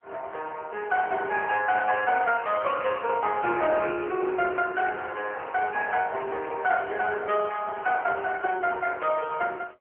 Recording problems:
phone line; 300 Hz to 2.8 kHz, AMR-NB

